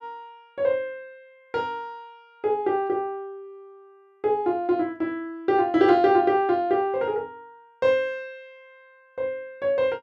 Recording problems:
none

